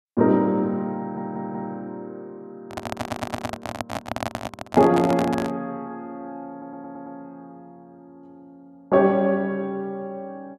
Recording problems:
stutter; at 1 s, at 3 s and at 6.5 s
handling noise; from 2.5 to 5.5 s; peak -1 dB vs average level

